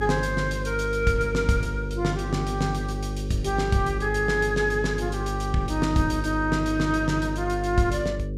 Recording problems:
hum; 50 Hz, harmonics up to 550 Hz, SNR 5 dB

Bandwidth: 15 kHz